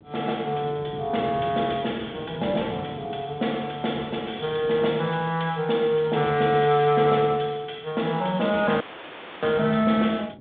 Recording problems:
telephone audio; 260 Hz to 3.7 kHz, G.726
wind noise; below 410 Hz, SNR 17 dB
dropout; at 9 s for 0.5 s

